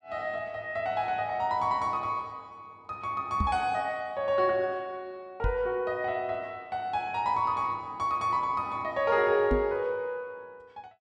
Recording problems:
microphone thump; at 3.5 s, at 5.5 s and at 9.5 s; peak +3 dB vs average level

